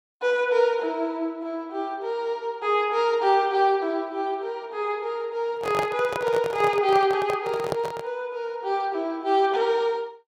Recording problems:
handling noise; from 5.5 to 8 s; peak +1 dB vs average level

